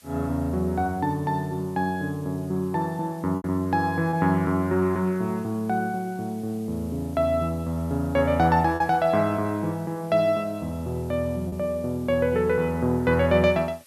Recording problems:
background hiss; SNR 27 dB
packet loss; 1.5% of the sound replaced, filled with repeated pitch periods

